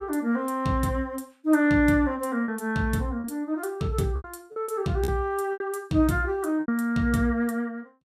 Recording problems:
packet loss; 6% of the sound replaced, filled with repeated pitch periods

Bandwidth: 15 kHz